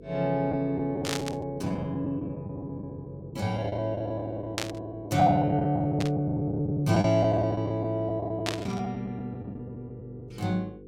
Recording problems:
electrical hum; 50 Hz, harmonics up to 500 Hz, SNR 19 dB
lost packets; 13% of the sound replaced, filled with the last packet
static burst; 4 times, first at 1 s; peak +3 dB vs average level

